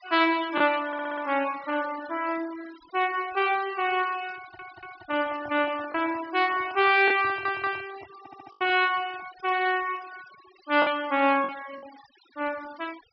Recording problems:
low-pass filter; nothing above 5.5 kHz
denoising artefacts; signal-to-artefact ratio 20 dB
packet loss; 1.9% of the sound replaced, filled with the last packet
stutter; 4 times, first at 1 s
handling noise; from 4.5 to 9.5 s; peak -14 dB vs average level

